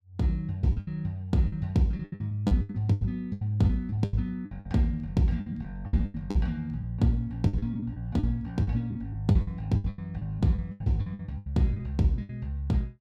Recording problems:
lost packets; 16% of the sound replaced, filled with the last packet

